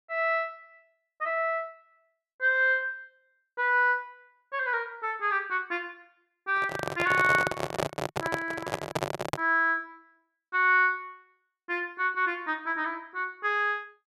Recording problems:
handling noise; from 6.5 to 9.5 s; peak +2 dB vs average level

